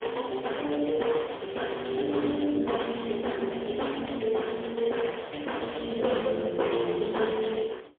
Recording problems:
telephone audio; 260 Hz to 3.4 kHz, AMR-NB, then MP3

